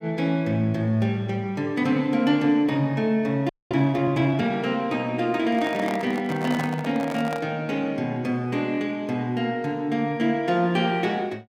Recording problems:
audio freezing; at 3.5 s
microphone handling noise; from 5.5 to 7.5 s; peak -3 dB vs average level

